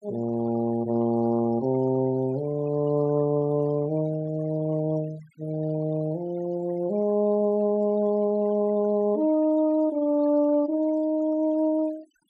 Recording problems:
denoising artefacts; signal-to-artefact ratio 25 dB

